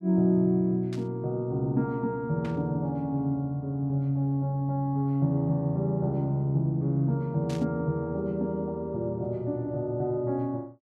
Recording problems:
static burst; at 1 s, at 2.5 s and at 7.5 s; peak -11 dB vs average level

